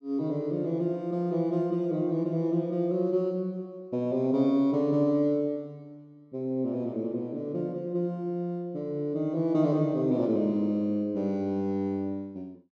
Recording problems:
none

